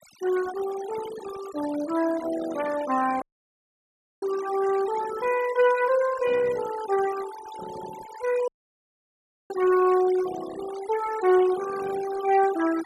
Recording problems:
denoising artefacts; signal-to-artefact ratio 15 dB
dropout; at 3 s for 1 s and at 8.5 s for 1 s

